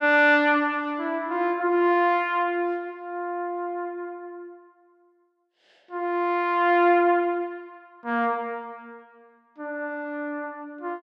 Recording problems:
none

